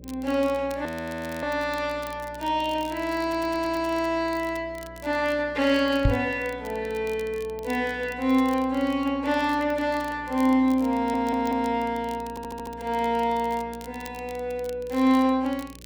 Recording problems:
electrical hum; 60 Hz, harmonics up to 600 Hz, SNR 21 dB
crackling; vinyl, SNR 23 dB
audio freezing; at 1 s for 0.5 s
audio stuttering; at 3 s, at 11 s and at 12 s
microphone bump; at 6 s; peak +7 dB vs average level

